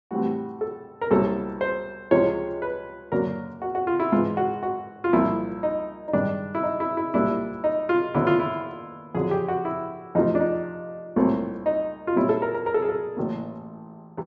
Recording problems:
low-pass filter; nothing above 7.6 kHz

